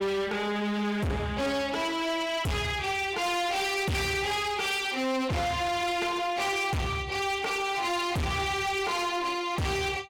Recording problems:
distortion; hard clipping, uneven, signal-to-distortion ratio 6 dB

